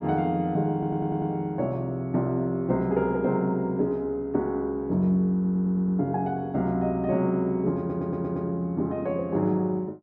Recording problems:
stutter; at 0.5 s, at 5.5 s and at 8 s

